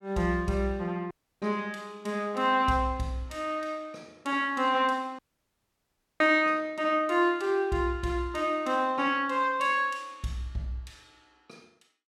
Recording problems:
audio cutting out; at 1 s and at 5 s for 1 s

